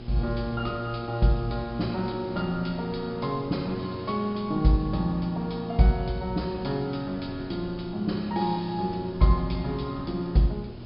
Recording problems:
treble missing; nothing above 5.5 kHz
electrical hum; 60 Hz, harmonics up to 840 Hz, SNR 16 dB
hiss; SNR 27 dB
wind on the microphone; below 300 Hz, SNR 21 dB

